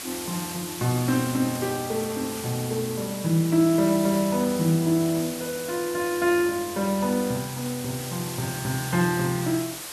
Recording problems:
hiss; slope 0 dB per octave, SNR 9 dB

